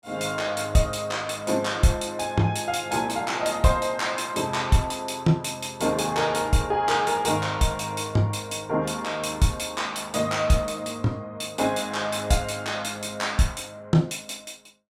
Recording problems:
none

